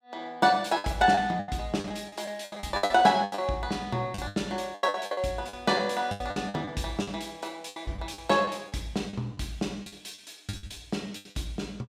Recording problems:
packet loss; 15% of the sound replaced, filled with the last packet

